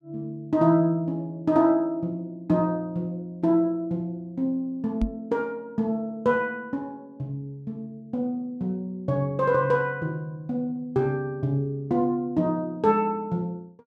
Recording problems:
microphone bump; at 5 s; peak +3 dB vs average level

